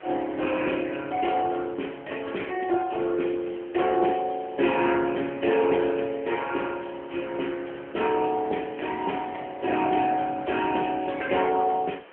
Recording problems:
phone line; 240 Hz to 3.2 kHz, AMR-NB
hiss; SNR 21 dB

